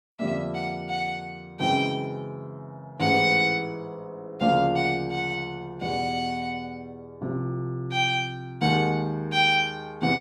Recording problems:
none

